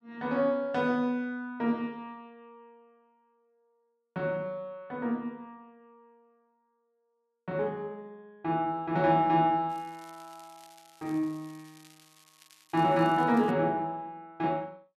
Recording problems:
crackle; from 9.5 to 14 s; loose cable, SNR 27 dB

